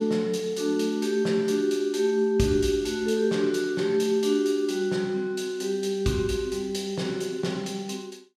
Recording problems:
none

